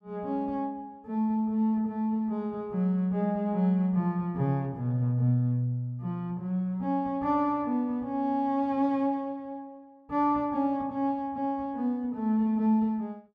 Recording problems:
none

